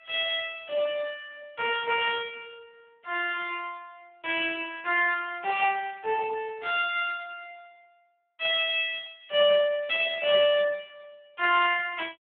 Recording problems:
telephone audio; 370 Hz to 3.4 kHz, Speex

